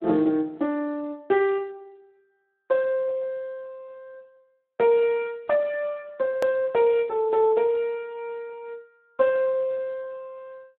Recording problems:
telephone audio; 190 Hz to 3.6 kHz, Speex
edit click; at 6.5 s

